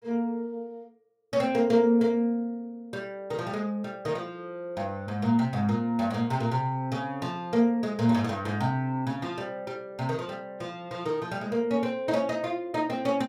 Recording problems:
none

